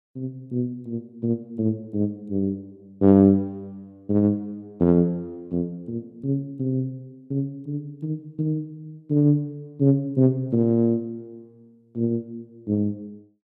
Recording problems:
none

